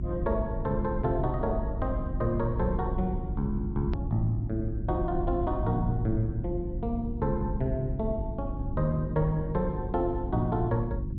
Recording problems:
treble cut off; nothing above 5.5 kHz
electrical hum; 50 Hz, harmonics up to 350 Hz, SNR 7 dB
low-frequency rumble; below 82 Hz, SNR 6 dB
hard cut with a click; at 4 s

